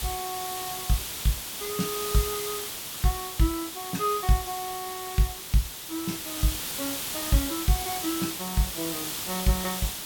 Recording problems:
background hiss; slope 0 dB per octave, SNR 2 dB

